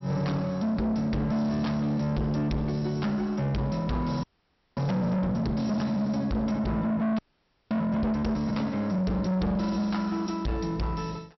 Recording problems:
low-pass filter; nothing above 5.7 kHz
distorted audio; soft clipping, signal-to-distortion ratio 6 dB
audio freezing; at 4 s for 0.5 s and at 7 s for 0.5 s

